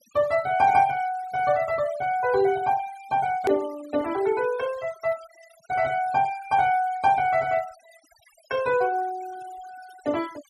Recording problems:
noise reduction artefacts; signal-to-artefact ratio 20 dB
hard cut with a click; at 3.5 s

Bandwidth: 13 kHz